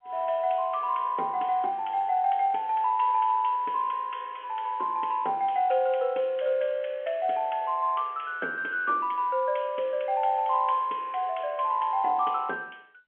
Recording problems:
phone line; 280 Hz to 3.4 kHz, G.711

